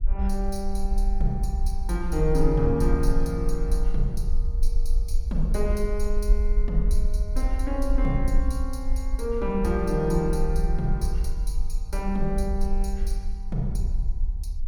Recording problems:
rumble; below 46 Hz, strongest tone 22 Hz, SNR 0 dB

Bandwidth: 18 kHz